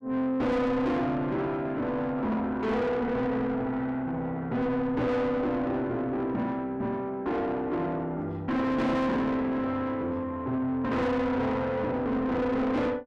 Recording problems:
distortion; soft clipping, signal-to-distortion ratio 5 dB

